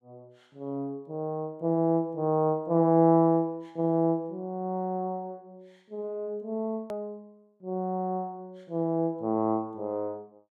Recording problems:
click at an edit; at 7 s

